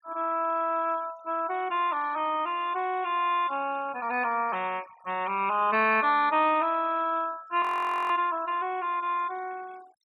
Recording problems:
denoising artefacts; signal-to-artefact ratio 23 dB
audio freezing; at 7.5 s

